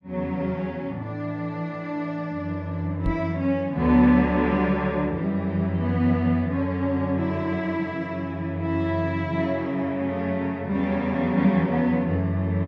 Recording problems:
microphone thump; at 3 s; peak +3 dB vs average level

